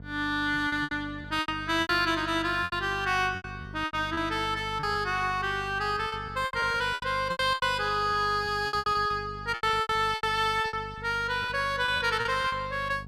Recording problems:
mains hum; 50 Hz, harmonics up to 750 Hz, SNR 16 dB
lost packets; 14% of the sound replaced, filled with repeated pitch periods

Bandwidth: 15 kHz